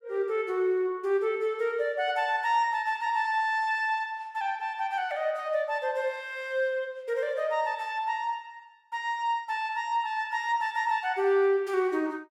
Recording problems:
none

